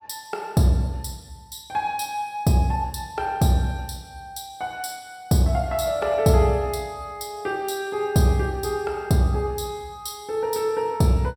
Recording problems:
none

